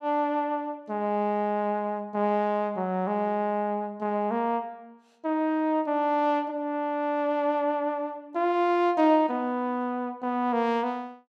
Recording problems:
none

